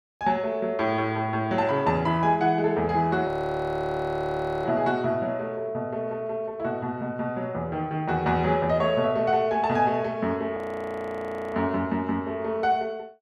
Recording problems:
frozen audio; at 3.5 s for 1.5 s and at 11 s for 1 s

